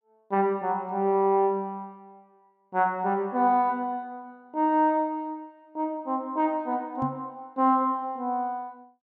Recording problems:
microphone bump; at 7 s; peak -2 dB vs average level

